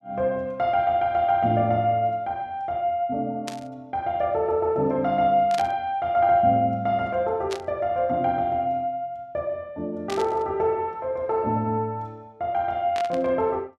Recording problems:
static burst; 5 times, first at 3.5 s; peak -6 dB vs average level

